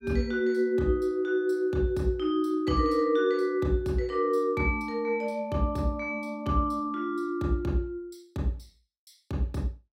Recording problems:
none

